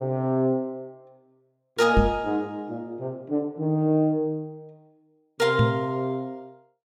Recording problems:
knock on the microphone; at 2 s and at 5.5 s; peak +7 dB vs average level

